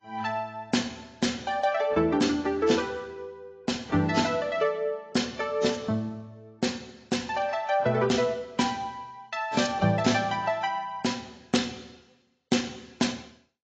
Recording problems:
codec artefacts; AAC, log-spectral distance 4 dB, nothing above 7.6 kHz

